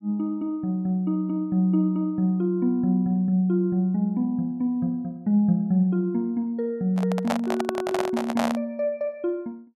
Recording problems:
microphone handling noise; from 7 to 8.5 s; peak +2 dB vs average level

